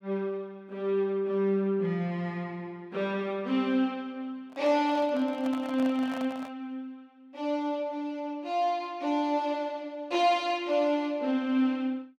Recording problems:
microphone handling noise; from 4.5 to 6.5 s; peak -8 dB vs average level

